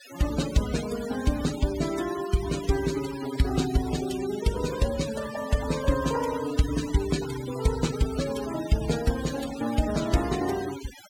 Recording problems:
noise reduction artefacts; signal-to-artefact ratio 12 dB

